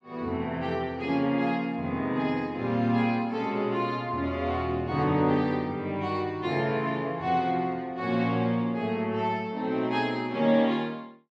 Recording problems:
none

